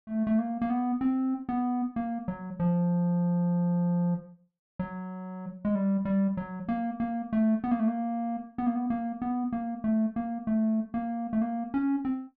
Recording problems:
none

